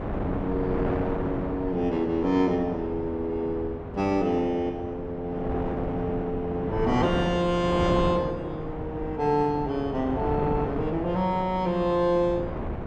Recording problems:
wind on the microphone; below 590 Hz, SNR 6 dB

